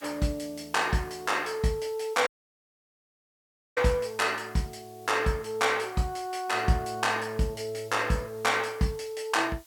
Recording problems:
background hiss; slope +2 dB per octave, SNR 25 dB
dropout; at 2.5 s for 1.5 s

